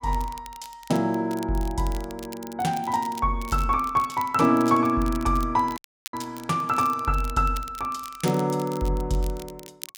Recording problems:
crackling; vinyl, SNR 19 dB
dropout; at 6 s

